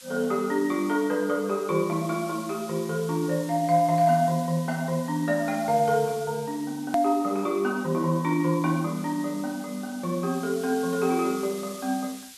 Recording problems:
hiss; slope +3 dB per octave, SNR 17 dB
click at an edit; at 7 s

